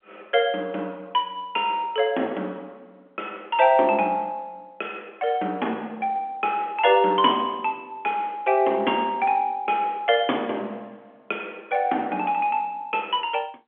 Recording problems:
telephone audio; 220 Hz to 3.4 kHz, G.711

